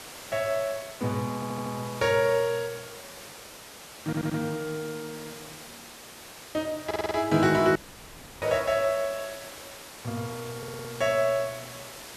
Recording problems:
background hiss; slope -2 dB per octave, SNR 14 dB
audio stuttering; 4 times, first at 1.5 s
dropout; at 8 s for 0.5 s

